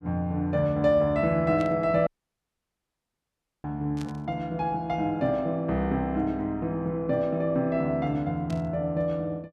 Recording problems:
static burst; at 1.5 s, at 4 s and at 8.5 s; peak -12 dB vs average level
audio cutting out; at 2 s for 1.5 s

